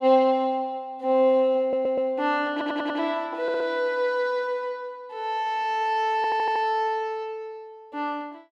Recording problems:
audio stuttering; 4 times, first at 1.5 s

